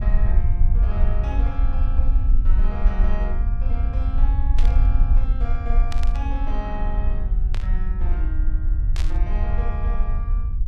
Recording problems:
low-frequency rumble; below 54 Hz, SNR -13 dB
burst of static; 4 times, first at 4.5 s; peak +5 dB vs average level

